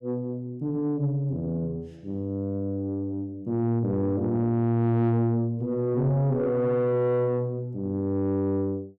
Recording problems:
distorted audio; soft clipping, signal-to-distortion ratio 11 dB

